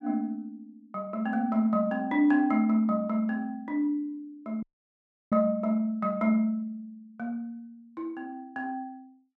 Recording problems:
audio cutting out; at 4.5 s for 0.5 s

